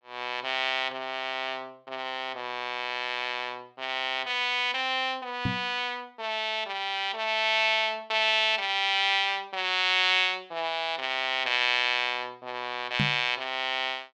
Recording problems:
microphone thump; at 5.5 s and at 13 s; peak +2 dB vs average level

